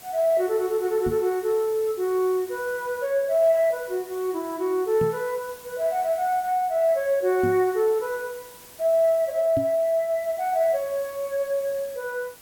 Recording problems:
hiss; slope -2 dB per octave, SNR 20 dB
microphone bump; 4 times, first at 1 s; peak -2 dB vs average level

